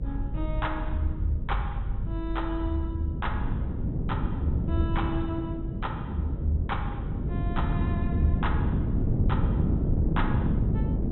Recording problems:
treble cut off; nothing above 3.9 kHz
hum; 50 Hz, harmonics up to 600 Hz, SNR 15 dB
low-frequency rumble; below 68 Hz, strongest tone 46 Hz, SNR 4 dB
wind noise; below 210 Hz, SNR -3 dB

